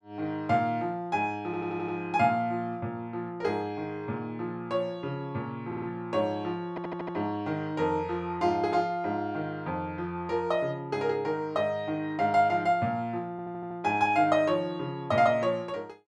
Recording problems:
stutter; 4 times, first at 1.5 s

